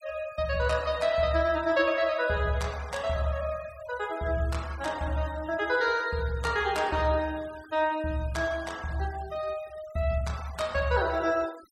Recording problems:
noise reduction artefacts; signal-to-artefact ratio 20 dB

